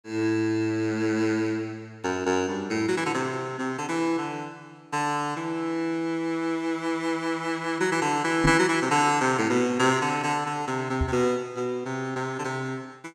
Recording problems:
knock on the microphone; at 8.5 s and at 11 s; peak +5 dB vs average level

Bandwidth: 16 kHz